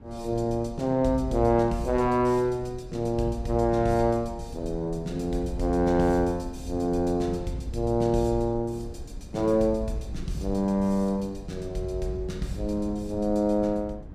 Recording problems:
low-frequency rumble; below 130 Hz, SNR 15 dB

